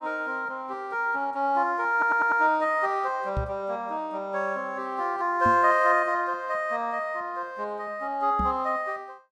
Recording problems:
audio stuttering; at 2 s
microphone bump; at 3.5 s, at 5.5 s and at 8.5 s; peak 0 dB vs average level

